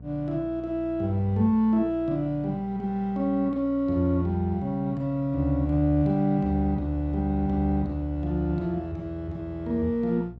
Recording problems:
electrical hum; 60 Hz, harmonics up to 480 Hz, SNR 19 dB

